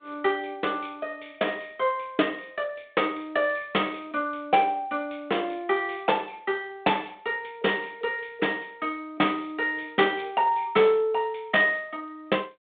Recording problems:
telephone audio; 260 Hz to 3.7 kHz, G.726

